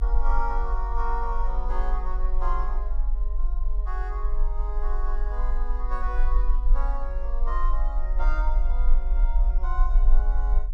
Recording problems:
low-frequency rumble; below 44 Hz, strongest tone 22 Hz, SNR -8 dB

